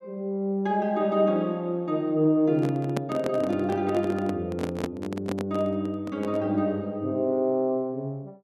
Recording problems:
microphone handling noise; from 2.5 to 6.5 s; peak 0 dB vs average level

